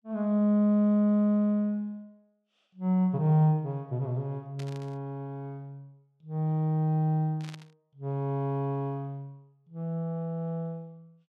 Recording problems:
burst of static; at 4.5 s and at 7.5 s; peak -14 dB vs average level

